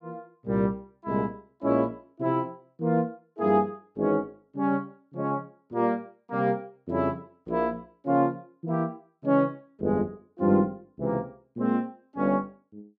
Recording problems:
none

